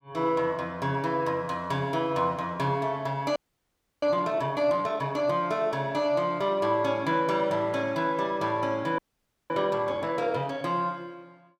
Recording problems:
audio freezing; at 3.5 s for 0.5 s and at 9 s for 0.5 s

